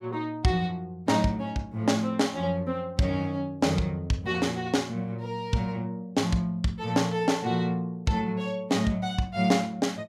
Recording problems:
none

